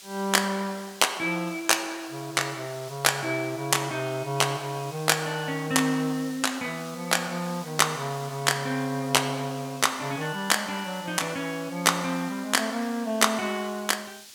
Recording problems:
hiss; SNR 18 dB

